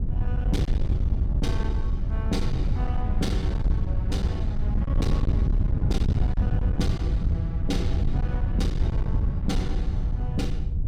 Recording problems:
distortion; hard clipping, signal-to-distortion ratio 9 dB
wind noise; below 100 Hz, SNR -7 dB

